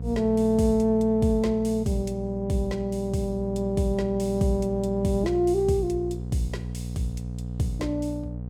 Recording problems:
hum; 60 Hz, harmonics up to 540 Hz, SNR 9 dB

